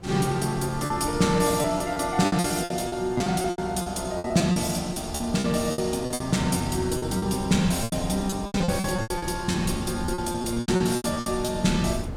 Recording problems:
wind on the microphone; below 190 Hz, SNR 14 dB
packet loss; 16% of the sound replaced, filled with repeated pitch periods

